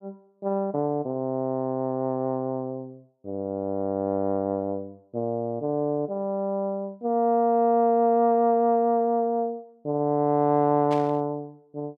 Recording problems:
burst of static; at 11 s; peak -10 dB vs average level

